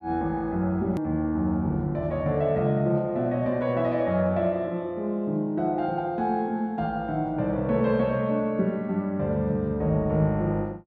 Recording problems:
click at an edit; at 1 s

